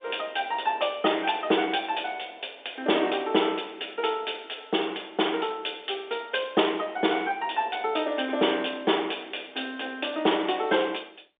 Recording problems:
telephone audio; 260 Hz to 3.6 kHz, G.711

